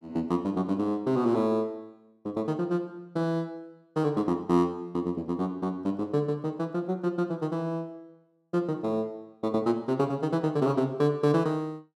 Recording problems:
none

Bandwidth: 13.5 kHz